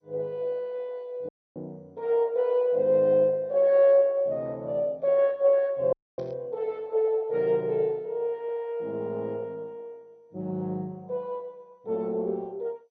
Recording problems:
codec artefacts; MP2, log-spectral distance 2 dB
audio cutting out; at 1.5 s and at 6 s
static burst; at 6 s; peak -24 dB vs average level

